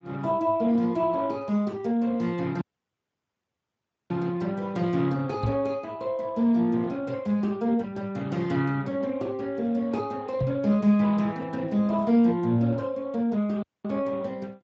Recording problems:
lossy compression; Speex, log-spectral distance 3 dB
audio cutting out; at 2.5 s for 1.5 s and at 14 s
microphone thump; at 5.5 s and at 10 s; peak +3 dB vs average level

